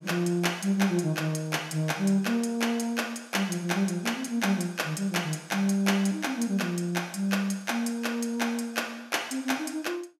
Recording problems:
none

